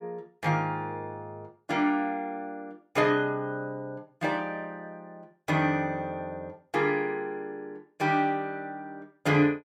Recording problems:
none

